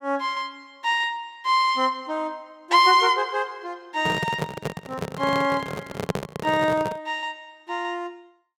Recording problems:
handling noise; from 4 to 7 s; peak +2 dB vs average level

